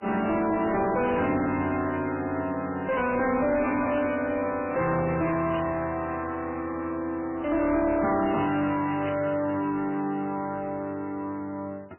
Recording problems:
lossy codec; MP3, log-spectral distance 3 dB, nothing above 2.5 kHz
distortion; soft clipping, signal-to-distortion ratio 7 dB
static burst; at 4 s, at 5.5 s and at 9 s; peak -8 dB vs average level

